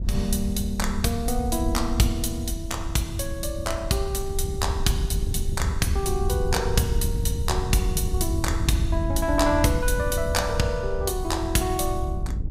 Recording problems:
wind on the microphone; below 92 Hz, SNR 3 dB

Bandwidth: 15.5 kHz